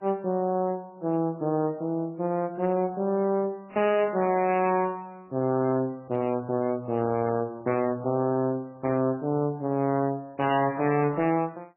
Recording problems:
lossy codec; MP3, then AAC, log-spectral distance 2 dB, nothing above 2.4 kHz
distortion; hard clipping, signal-to-distortion ratio 11 dB

